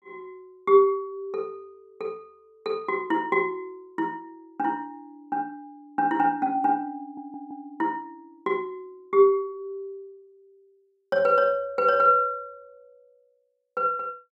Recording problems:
stutter; at 7 s

